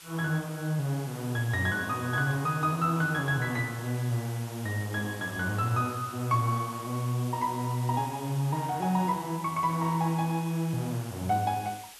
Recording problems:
background hiss; slope +2 dB per octave, SNR 16 dB

